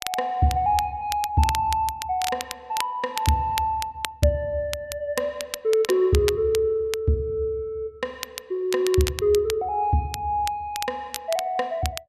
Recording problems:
crackle; vinyl, SNR 10 dB

